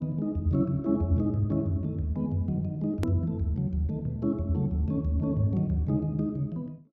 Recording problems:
click at an edit; at 3 s

